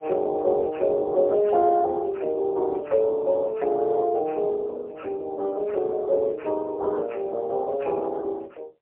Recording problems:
telephone audio; 340 Hz to 2.8 kHz, AMR-NB, then MP3

